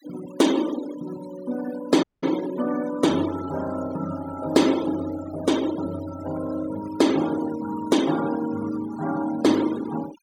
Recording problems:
noise reduction artefacts; signal-to-artefact ratio 15 dB
dropout; at 2 s

